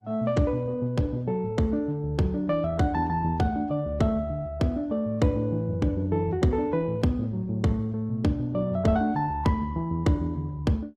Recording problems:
lossy compression; Opus, log-spectral distance 2 dB, nothing above 13.7 kHz

